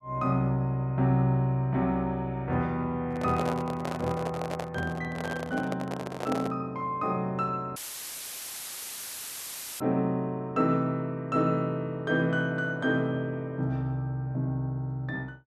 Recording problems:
microphone handling noise; from 3 to 6.5 s; peak 0 dB vs average level
dropout; at 8 s for 2 s; filled with static

